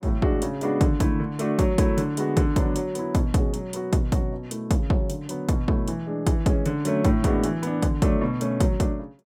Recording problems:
none

